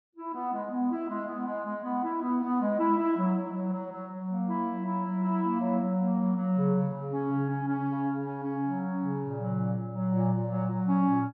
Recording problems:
treble cut off; nothing above 6.2 kHz

